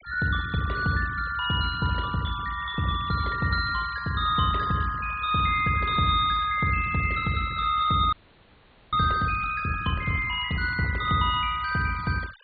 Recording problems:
treble cut off; nothing above 4.4 kHz
denoising artefacts; signal-to-artefact ratio 18 dB
frozen audio; at 8 s for 1 s

